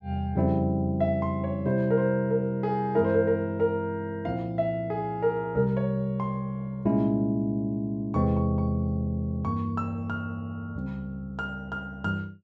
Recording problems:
none

